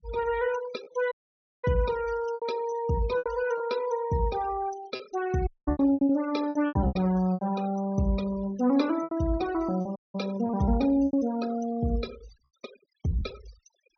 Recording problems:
low-pass filter; nothing above 6.1 kHz
noise reduction artefacts; signal-to-artefact ratio 18 dB
packet loss; 9% of the sound replaced, filled with repeated pitch periods
audio cutting out; at 1 s for 0.5 s, at 5.5 s and at 10 s

